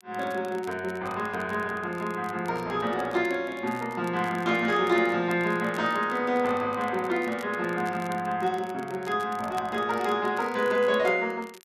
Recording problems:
crackle; vinyl, SNR 23 dB

